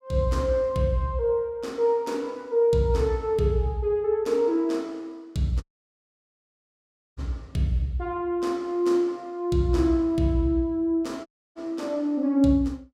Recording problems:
audio cutting out; at 5.5 s for 1.5 s and at 11 s

